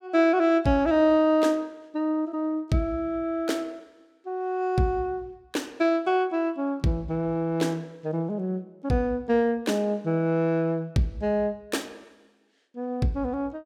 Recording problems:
none

